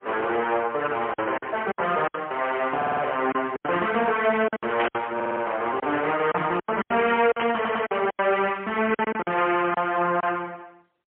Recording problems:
telephone audio; 280 Hz to 3.2 kHz, AMR-NB, then MP3
lost packets; 10% of the sound replaced, filled with silence
burst of static; at 2 s, at 5 s and at 7.5 s; peak 0 dB vs average level
audio stuttering; at 3 s, at 5 s and at 7.5 s

